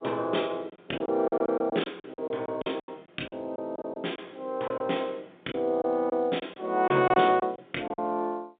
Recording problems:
phone line; 240 Hz to 3.7 kHz, G.711
packet loss; 11% of the sound replaced, filled with silence

